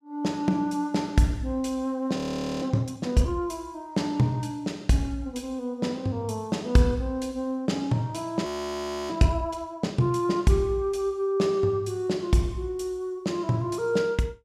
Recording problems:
frozen audio; at 2 s and at 8.5 s for 0.5 s

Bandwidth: 15 kHz